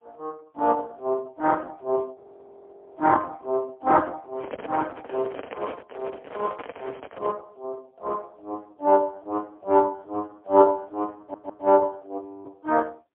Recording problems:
phone line; 260 Hz to 2.2 kHz, AMR-NB, then MP3
frozen audio; at 2 s for 1 s and at 12 s
microphone handling noise; from 4.5 to 7.5 s; peak -4 dB vs average level
stutter; at 11 s

